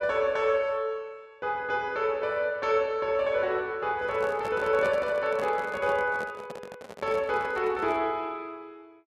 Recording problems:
microphone handling noise; from 4 to 8 s; peak -4 dB vs average level

